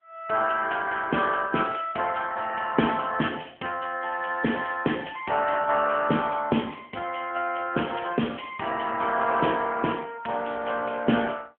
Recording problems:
telephone audio; 190 Hz to 3.2 kHz, AMR-NB

